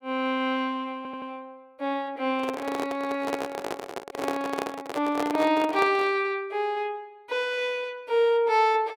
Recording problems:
stutter; at 1 s
microphone handling noise; from 2.5 to 6 s; peak +1 dB vs average level

